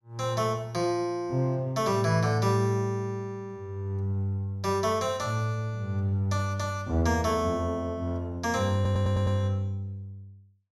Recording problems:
stutter; at 9 s

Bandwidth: 16 kHz